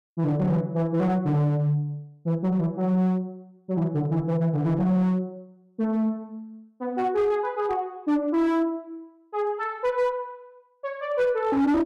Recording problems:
distortion; hard clipping, signal-to-distortion ratio 11 dB

